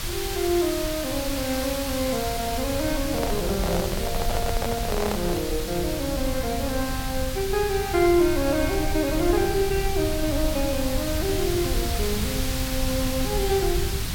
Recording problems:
hiss; slope 0 dB per octave, SNR 5 dB
rumble; below 98 Hz, SNR 6 dB
handling noise; from 3 to 5.5 s; peak +1 dB vs average level

